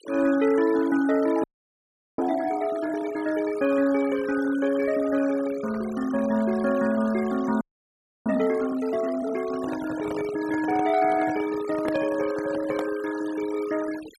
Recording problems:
denoising artefacts; signal-to-artefact ratio 16 dB
frozen audio; at 1.5 s for 0.5 s and at 7.5 s for 0.5 s
microphone handling noise; from 9.5 to 13 s; peak -3 dB vs average level

